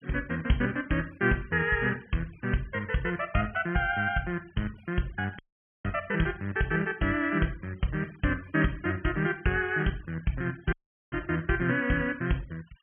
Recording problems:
treble missing; nothing above 3.2 kHz
noise reduction artefacts; signal-to-artefact ratio 25 dB
audio cutting out; at 5.5 s and at 11 s

